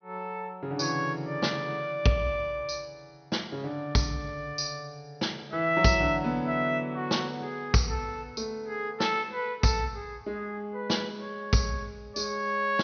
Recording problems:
treble cut off; nothing above 6.3 kHz

